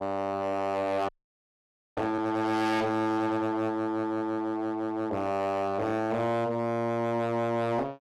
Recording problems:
distortion; hard clipping, uneven, signal-to-distortion ratio 6 dB
audio freezing; at 1 s for 1 s

